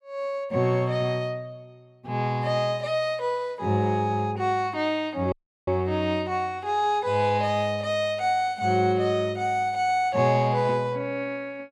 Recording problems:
dropout; at 5.5 s

